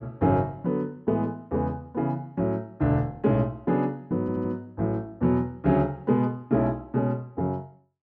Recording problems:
stutter; at 4 s

